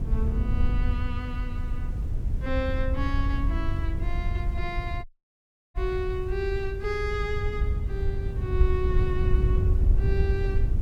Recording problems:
hiss; slope -4 dB per octave, SNR 23 dB
wind on the microphone; below 84 Hz, SNR -5 dB
dropout; at 5 s for 0.5 s

